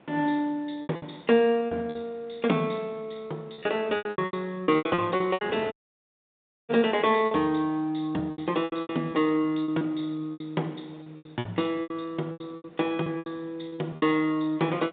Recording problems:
phone line; 190 Hz to 3.7 kHz, G.726
wind noise; below 1.1 kHz, SNR 25 dB
lost packets; 14% of the sound replaced, filled with repeated pitch periods
audio cutting out; at 5.5 s for 1 s

